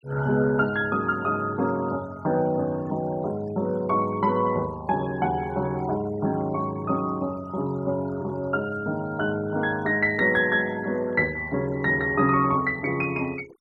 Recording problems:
noise reduction artefacts; signal-to-artefact ratio 23 dB

